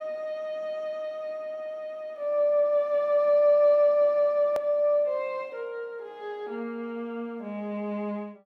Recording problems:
edit click; at 4.5 s

